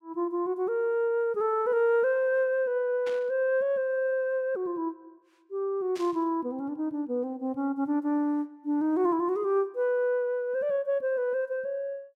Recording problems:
static burst; at 3 s and at 6 s; peak -10 dB vs average level

